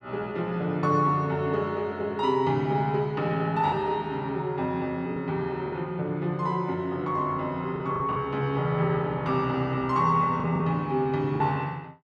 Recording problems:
packet loss; 3% of the sound replaced, filled with the last packet

